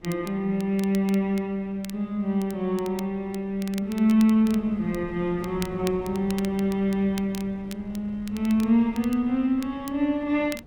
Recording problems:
wind on the microphone; below 270 Hz, SNR 21 dB
crackle; vinyl, SNR 20 dB

